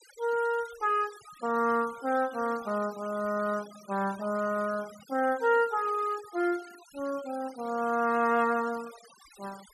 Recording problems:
denoising artefacts; signal-to-artefact ratio 21 dB

